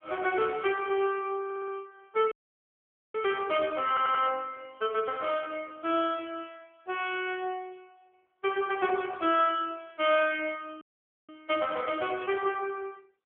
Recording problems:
telephone audio; 320 Hz to 3.4 kHz, AMR-NB
audio stuttering; at 1.5 s and at 4 s
dropout; at 2.5 s for 1 s and at 11 s

